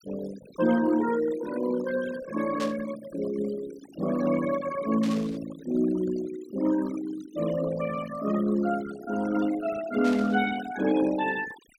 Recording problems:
denoising artefacts; signal-to-artefact ratio 13 dB
static burst; at 2.5 s, at 5 s and at 10 s; peak -6 dB vs average level

